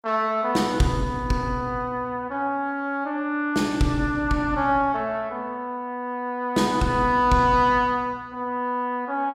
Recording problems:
none

